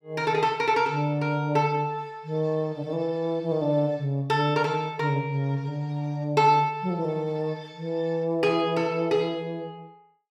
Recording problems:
none

